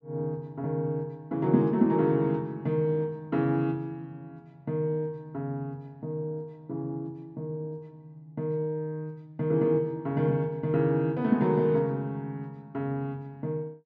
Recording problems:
none

